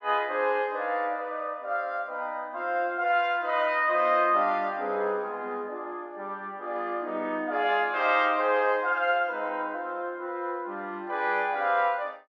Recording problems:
none

